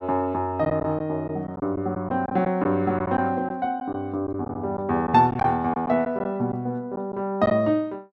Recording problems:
lost packets; 6% of the sound replaced, filled with silence

